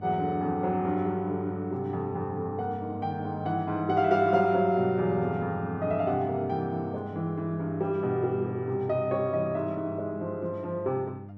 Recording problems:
electrical hum; 50 Hz, harmonics up to 600 Hz, SNR 13 dB

